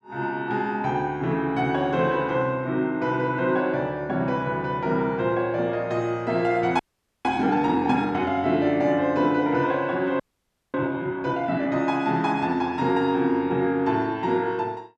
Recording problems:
frozen audio; at 7 s and at 10 s for 0.5 s

